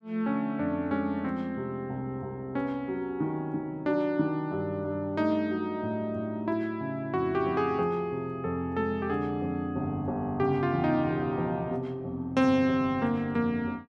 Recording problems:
none

